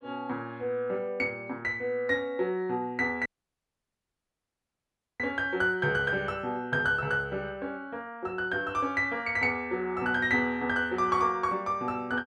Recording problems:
dropout; at 3.5 s for 2 s

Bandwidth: 12 kHz